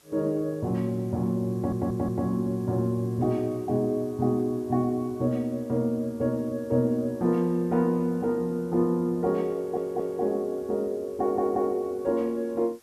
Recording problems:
background hiss; slope -1 dB per octave, SNR 30 dB
stutter; at 1.5 s, at 9.5 s and at 11 s

